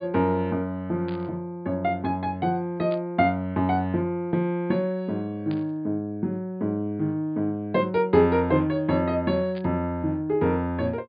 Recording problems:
treble cut off; nothing above 4.9 kHz
burst of static; 4 times, first at 1 s; peak -14 dB vs average level

